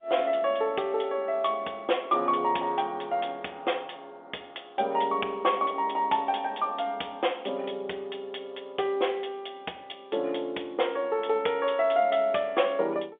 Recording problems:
telephone audio; 300 Hz to 3.6 kHz, G.711

